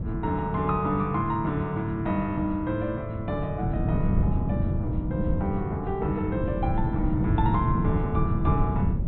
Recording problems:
low-pass filter; nothing above 4.1 kHz
wind noise; below 180 Hz, SNR 1 dB

